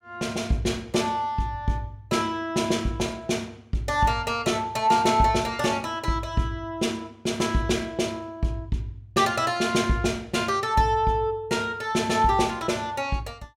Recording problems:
none

